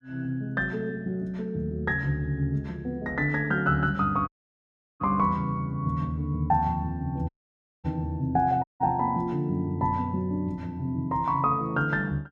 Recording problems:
audio cutting out; at 4.5 s for 0.5 s, at 7.5 s for 0.5 s and at 8.5 s

